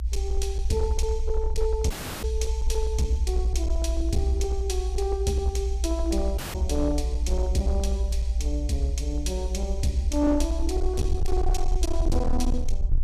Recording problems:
distortion; hard clipping, uneven, signal-to-distortion ratio 11 dB
rumble; below 60 Hz, SNR -1 dB
dropout; at 2 s and at 6.5 s

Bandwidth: 14.5 kHz